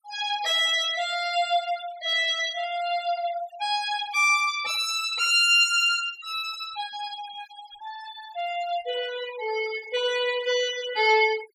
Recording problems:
denoising artefacts; signal-to-artefact ratio 17 dB

